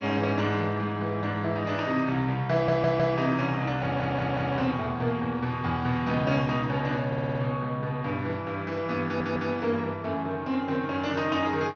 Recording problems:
codec artefacts; MP2, then Speex, log-spectral distance 3 dB
stutter; 4 times, first at 2.5 s

